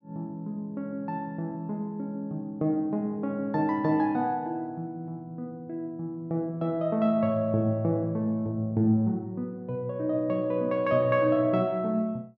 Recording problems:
none

